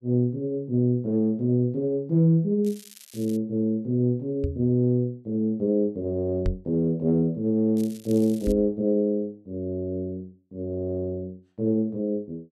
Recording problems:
crackle; at 2.5 s and at 8 s; loose cable, SNR 22 dB
microphone bump; at 4.5 s, at 6.5 s and at 8.5 s; peak +1 dB vs average level

